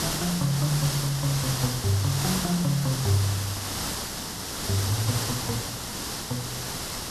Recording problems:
hiss; SNR 2 dB

